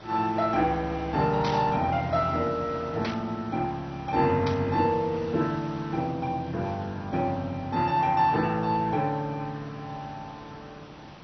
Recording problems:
lossy codec; MP2, log-spectral distance 4 dB, nothing above 5.5 kHz
hiss; slope -4 dB per octave, SNR 18 dB
static burst; at 1.5 s, at 3 s and at 4.5 s; peak -4 dB vs average level

